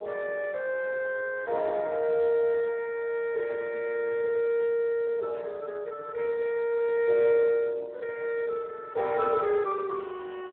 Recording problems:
telephone audio; 320 Hz to 3.1 kHz, Speex

